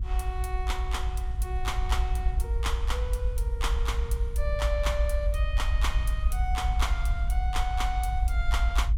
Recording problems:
rumble; below 60 Hz, strongest tone 50 Hz, SNR -3 dB
wind noise; below 62 Hz, SNR 1 dB

